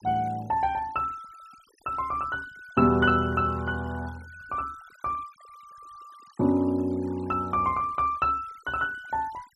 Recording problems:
noise reduction artefacts; signal-to-artefact ratio 25 dB

